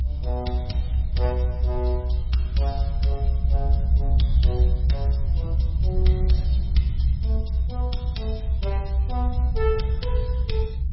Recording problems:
lossy codec; MP3, log-spectral distance 2 dB, nothing above 5.5 kHz
low-frequency rumble; below 66 Hz, strongest tone 64 Hz, SNR -8 dB

